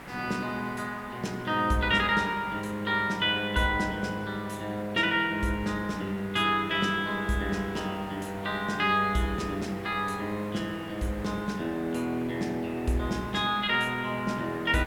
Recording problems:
hiss; SNR 15 dB

